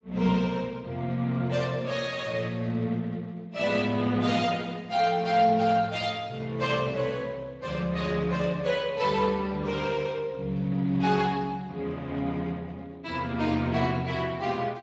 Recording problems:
codec artefacts; Speex, log-spectral distance 4 dB, nothing above 7.3 kHz

